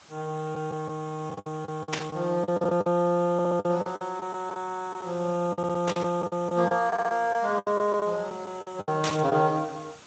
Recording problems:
lossy compression; Speex, log-spectral distance 6 dB, nothing above 7.6 kHz
background hiss; slope -2 dB per octave, SNR 23 dB
packet loss; 13% of the sound replaced, filled with the last packet
burst of static; at 2 s, at 6 s and at 9 s; peak +3 dB vs average level
audio stuttering; at 3.5 s, at 5.5 s and at 7 s

